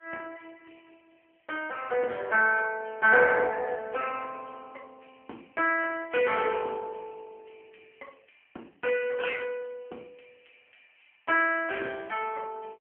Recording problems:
telephone audio; 240 Hz to 3.1 kHz, AMR-NB

